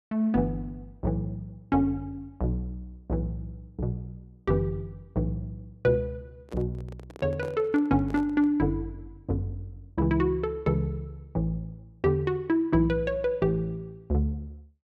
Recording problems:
microphone handling noise; from 6.5 to 8.5 s; peak -9 dB vs average level

